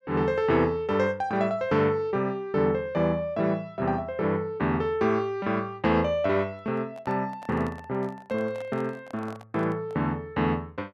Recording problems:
handling noise; from 6.5 to 10 s; peak -11 dB vs average level

